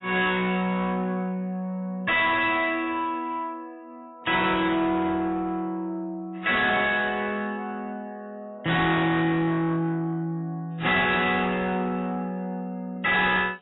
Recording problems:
lossy compression; AAC, log-spectral distance 3 dB, nothing above 3.9 kHz
distortion; soft clipping, signal-to-distortion ratio 6 dB

